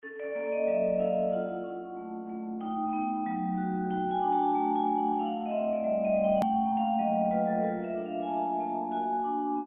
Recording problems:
treble missing; nothing above 3.3 kHz
codec artefacts; Vorbis, then Opus, log-spectral distance 2 dB
edit click; at 6.5 s

